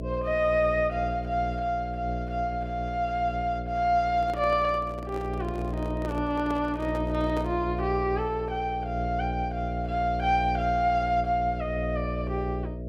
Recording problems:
hum; 60 Hz, harmonics up to 660 Hz, SNR 6 dB
handling noise; from 4 to 7.5 s; peak -5 dB vs average level

